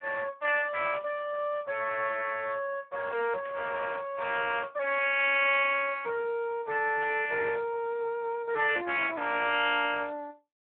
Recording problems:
telephone audio; 320 Hz to 3.2 kHz, Speex
burst of static; 4 times, first at 1 s; peak -10 dB vs average level

